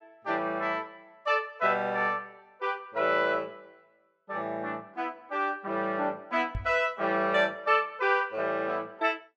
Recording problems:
knock on the microphone; at 6.5 s; peak -2 dB vs average level

